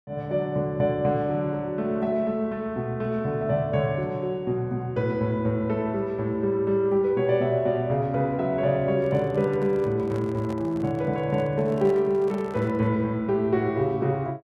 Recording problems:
handling noise; from 9 to 13 s; peak -10 dB vs average level

